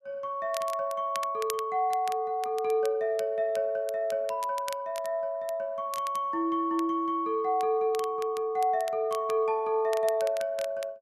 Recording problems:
crackle; vinyl, SNR 17 dB

